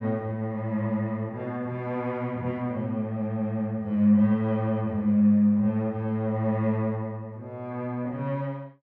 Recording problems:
none

